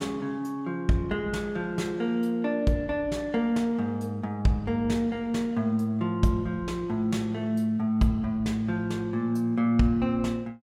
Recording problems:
none

